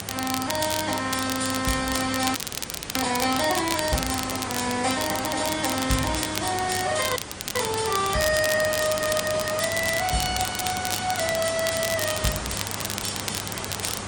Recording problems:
lossy codec; Opus, then MP3, log-spectral distance 13 dB
hum; 50 Hz, harmonics up to 600 Hz, SNR 17 dB
background hiss; slope -4 dB per octave, SNR 7 dB
crackling; vinyl, SNR 5 dB
audio freezing; at 2.5 s for 0.5 s and at 7 s

